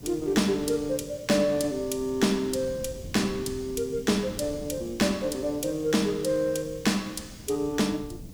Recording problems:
background hiss; slope +2 dB per octave, SNR 26 dB
wind on the microphone; below 220 Hz, SNR 17 dB

